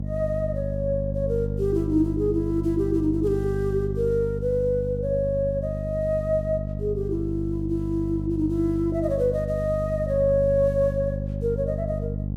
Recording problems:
electrical hum; 50 Hz, harmonics up to 500 Hz, SNR 4 dB

